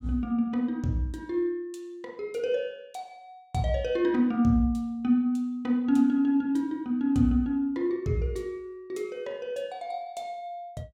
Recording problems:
none

